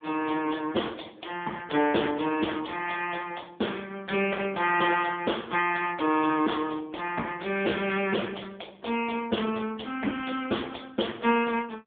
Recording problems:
phone line; 220 Hz to 3.4 kHz, AMR-NB

